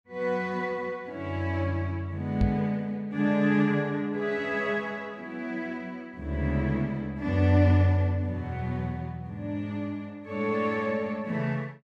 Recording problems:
microphone bump; at 2.5 s; peak +4 dB vs average level

